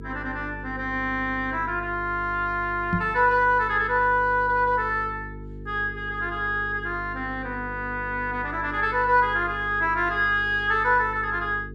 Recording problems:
electrical hum; 50 Hz, harmonics up to 450 Hz, SNR 15 dB
knock on the microphone; at 3 s; peak +2 dB vs average level

